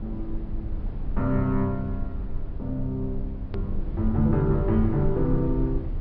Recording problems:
treble cut off; nothing above 5.5 kHz
hum; 50 Hz, harmonics up to 1.3 kHz, SNR 23 dB
low-frequency rumble; below 66 Hz, SNR 6 dB
hard cut with a click; at 3.5 s

